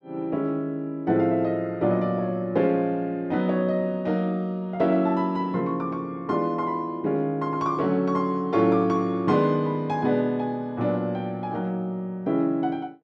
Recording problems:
none

